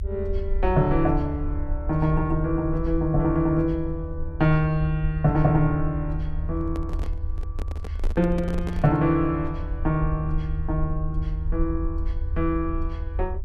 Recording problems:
low-frequency rumble; below 78 Hz, SNR 6 dB
microphone handling noise; from 6.5 to 9 s; peak -6 dB vs average level

